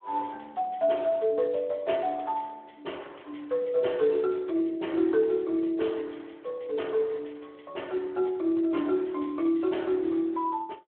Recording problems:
telephone audio; 300 Hz to 3.3 kHz, Speex

